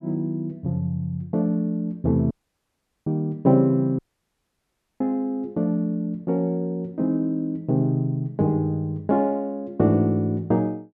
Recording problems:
audio cutting out; at 2.5 s for 1 s and at 4 s for 1 s

